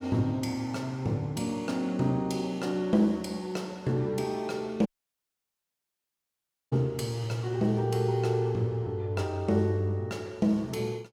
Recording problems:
dropout; at 5 s for 2 s

